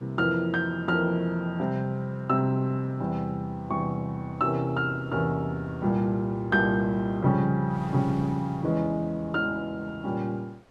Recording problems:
wind on the microphone; below 1.4 kHz, SNR 26 dB

